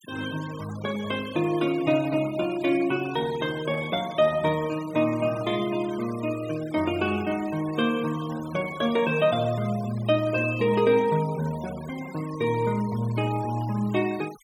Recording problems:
noise reduction artefacts; signal-to-artefact ratio 18 dB

